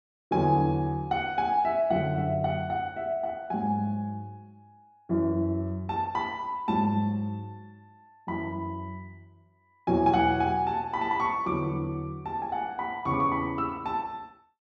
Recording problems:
none

